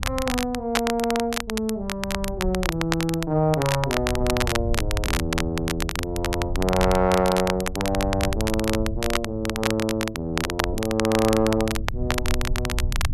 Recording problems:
wind on the microphone; below 84 Hz, SNR 8 dB
crackling; vinyl, SNR 4 dB

